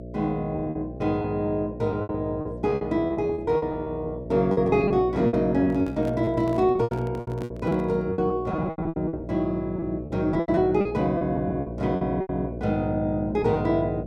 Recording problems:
hum; 60 Hz, harmonics up to 660 Hz, SNR 11 dB
lost packets; 15% of the sound replaced, filled with repeated pitch periods
microphone handling noise; from 5.5 to 8 s; peak -8 dB vs average level

